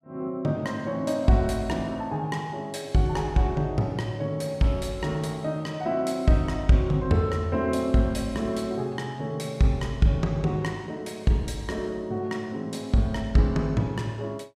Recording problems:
none

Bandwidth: 14.5 kHz